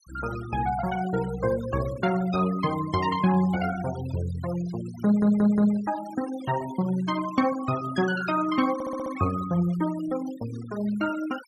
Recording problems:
noise reduction artefacts; signal-to-artefact ratio 18 dB
audio stuttering; at 5 s and at 8.5 s

